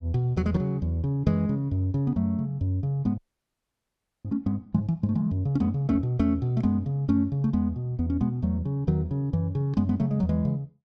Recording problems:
frozen audio; at 3 s for 1 s

